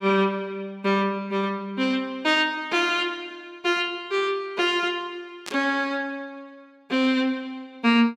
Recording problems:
burst of static; at 5.5 s; peak -5 dB vs average level

